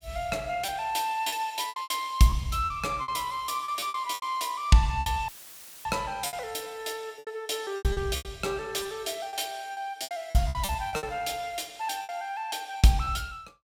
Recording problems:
lost packets; 12% of the sound replaced, filled with repeated pitch periods
audio cutting out; at 5.5 s for 0.5 s; filled with static

